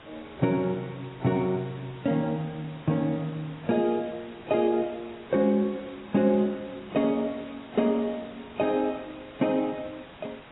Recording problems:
codec artefacts; AAC, log-spectral distance 11 dB, nothing above 3.1 kHz
hiss; SNR 20 dB

